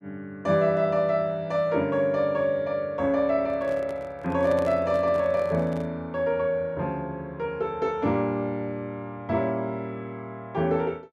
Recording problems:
handling noise; from 3.5 to 6 s; peak -6 dB vs average level

